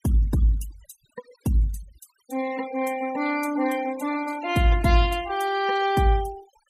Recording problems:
noise reduction artefacts; signal-to-artefact ratio 17 dB

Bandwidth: 15.5 kHz